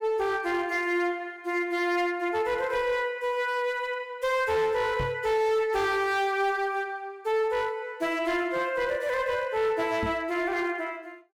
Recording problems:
distorted audio; hard clipping, uneven, signal-to-distortion ratio 11 dB
knock on the microphone; at 5 s and at 10 s; peak -2 dB vs average level

